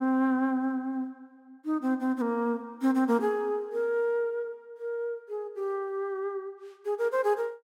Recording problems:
none

